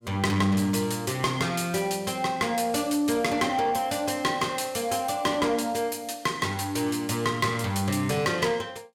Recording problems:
distortion; soft clipping, signal-to-distortion ratio 12 dB

